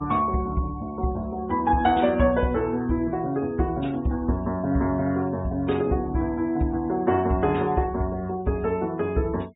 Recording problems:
treble cut off; nothing above 4 kHz
noise reduction artefacts; signal-to-artefact ratio 27 dB

